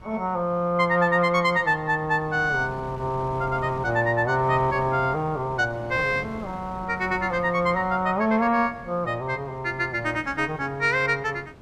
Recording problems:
wind noise; below 570 Hz, SNR 18 dB

